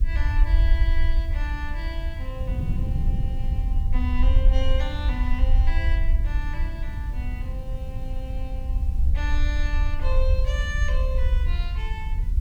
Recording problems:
background hiss; slope -1 dB per octave, SNR 23 dB
low-frequency rumble; below 60 Hz, SNR -9 dB
wind noise; below 140 Hz, SNR 0 dB

